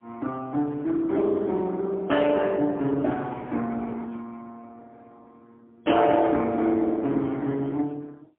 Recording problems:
phone line; 190 Hz to 3.5 kHz, AMR-NB, then MP3

